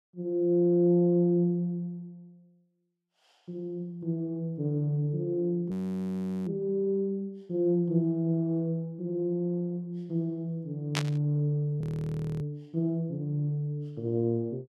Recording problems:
audio freezing; at 5.5 s for 1 s and at 12 s for 0.5 s
burst of static; at 11 s; peak +3 dB vs average level

